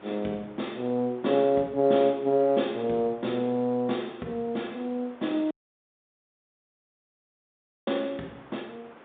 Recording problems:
telephone audio; 170 Hz to 3.7 kHz, G.711
wind on the microphone; below 1.5 kHz, SNR 24 dB
audio cutting out; at 5.5 s for 2.5 s

